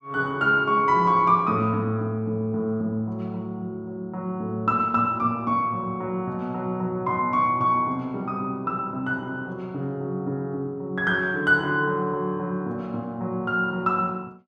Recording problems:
none

